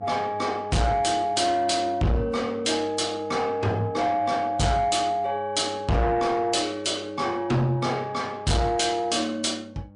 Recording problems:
lossy codec; MP3, log-spectral distance 2 dB, nothing above 10.1 kHz
distortion; soft clipping, signal-to-distortion ratio 6 dB
electrical hum; 50 Hz, harmonics up to 1.1 kHz, SNR 22 dB

